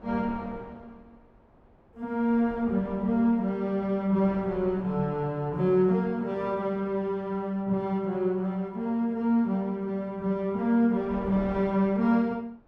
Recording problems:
wind on the microphone; below 670 Hz, SNR 19 dB

